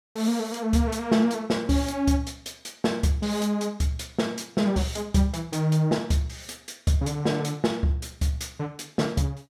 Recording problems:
none

